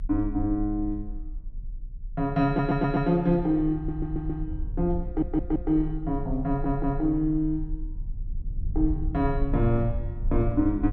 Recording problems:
low-frequency rumble; below 56 Hz, strongest tone 32 Hz, SNR 8 dB
stutter; 4 times, first at 2.5 s

